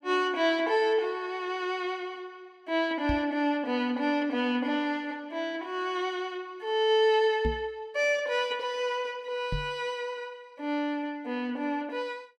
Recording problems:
microphone thump; at 3 s, at 7.5 s and at 9.5 s; peak +1 dB vs average level

